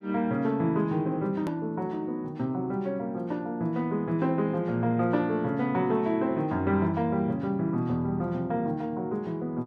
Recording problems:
click at an edit; at 1.5 s

